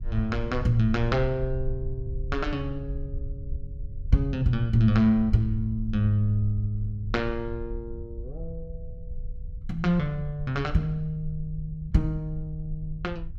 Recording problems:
low-frequency rumble; below 64 Hz, SNR 10 dB

